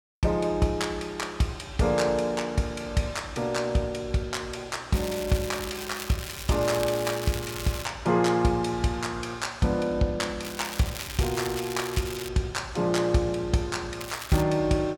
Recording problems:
crackling; from 5 to 8 s, from 10 to 12 s and at 14 s; loose cable, SNR 10 dB

